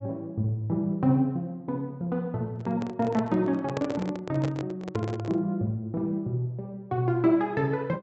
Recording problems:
treble missing; nothing above 7.9 kHz
handling noise; from 2.5 to 5.5 s; peak 0 dB vs average level

